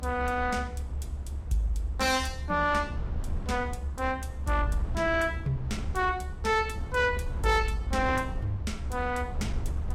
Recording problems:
lossy compression; Vorbis, log-spectral distance 2 dB, nothing above 16 kHz
distortion; soft clipping, signal-to-distortion ratio 10 dB
low-frequency rumble; below 86 Hz, SNR 6 dB

